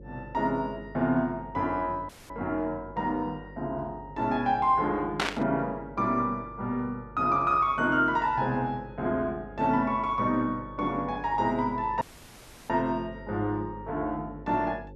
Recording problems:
electrical hum; 50 Hz, harmonics up to 550 Hz, SNR 19 dB
audio cutting out; at 2 s and at 12 s for 0.5 s
static burst; at 5 s; peak +4 dB vs average level

